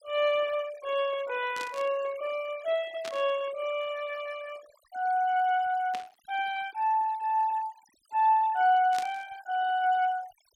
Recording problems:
noise reduction artefacts; signal-to-artefact ratio 21 dB
static burst; 4 times, first at 1.5 s; peak -6 dB vs average level

